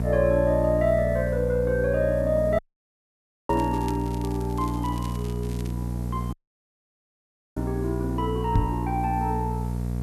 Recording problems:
electrical hum; 60 Hz, harmonics up to 720 Hz, SNR 3 dB
background hiss; slope +3 dB per octave, SNR 27 dB
dropout; at 2.5 s for 1 s and at 6.5 s for 1 s
crackle; from 3.5 to 5.5 s; loose cable, SNR 21 dB
knock on the microphone; at 8.5 s; peak +8 dB vs average level

